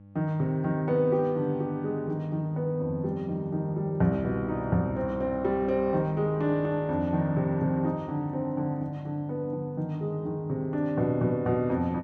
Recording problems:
hum; 50 Hz, harmonics up to 800 Hz, SNR 22 dB

